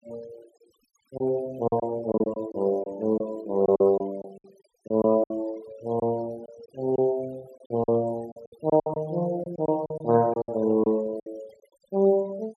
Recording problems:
denoising artefacts; signal-to-artefact ratio 23 dB
lost packets; 10% of the sound replaced, filled with silence

